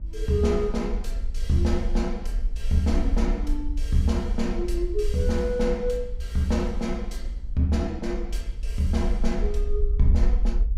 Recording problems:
electrical hum; 60 Hz, harmonics up to 660 Hz, SNR 23 dB
rumble; below 48 Hz, SNR 4 dB

